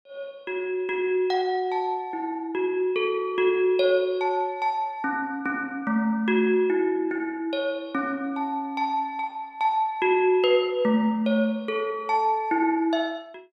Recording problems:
none

